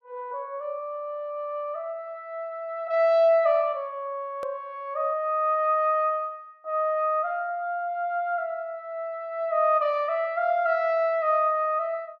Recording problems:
edit click; at 4.5 s

